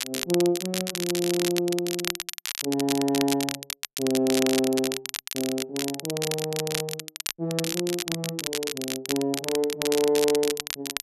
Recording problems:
crackle; vinyl, SNR 3 dB

